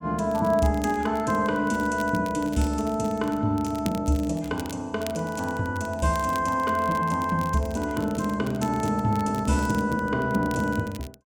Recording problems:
crackling; vinyl, SNR 20 dB

